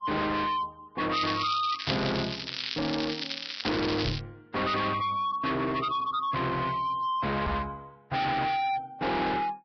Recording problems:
codec artefacts; Vorbis, log-spectral distance 8 dB, nothing above 5.3 kHz
distortion; hard clipping, signal-to-distortion ratio 6 dB
crackle; from 1 to 4 s; loose cable, SNR 5 dB
knock on the microphone; at 4 s and at 7.5 s; peak +2 dB vs average level

